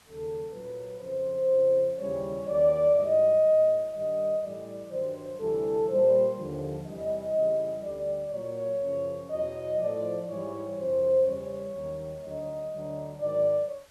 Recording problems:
background hiss; SNR 30 dB

